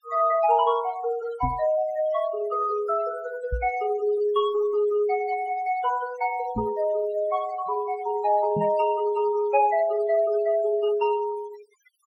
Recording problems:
denoising artefacts; signal-to-artefact ratio 18 dB
knock on the microphone; 4 times, first at 1.5 s; peak -1 dB vs average level

